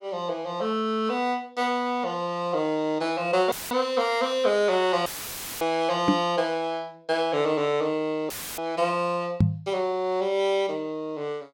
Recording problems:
dropout; at 3.5 s, at 5 s for 0.5 s and at 8.5 s; filled with static
microphone thump; at 6 s and at 9.5 s; peak +9 dB vs average level

